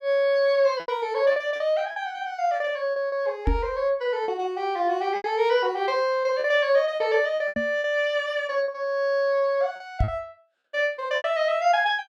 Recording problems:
packet loss; 8% of the sound replaced, filled with repeated pitch periods
knock on the microphone; at 3.5 s, at 7.5 s and at 10 s; peak +4 dB vs average level

